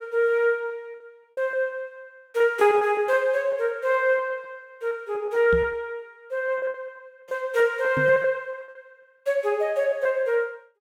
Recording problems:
lost packets; 8% of the sound replaced, filled with repeated pitch periods
microphone thump; at 5.5 s and at 8 s; peak -2 dB vs average level

